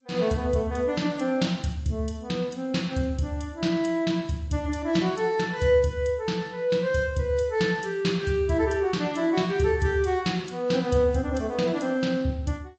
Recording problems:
lossy compression; G.722, then MP3, log-spectral distance 2 dB, nothing above 7.8 kHz

